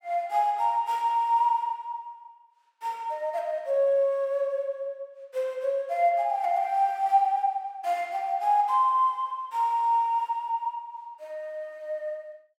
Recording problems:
none

